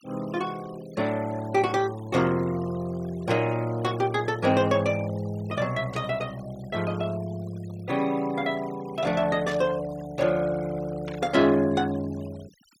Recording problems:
noise reduction artefacts; signal-to-artefact ratio 21 dB
burst of static; at 6 s, at 9.5 s and at 11 s; peak -10 dB vs average level

